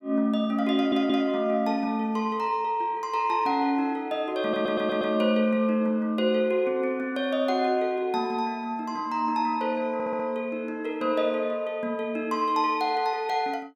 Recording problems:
stutter; at 1 s, at 4.5 s and at 10 s

